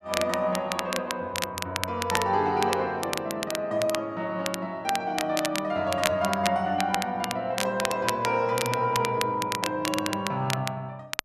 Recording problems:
crackling; vinyl, SNR 6 dB

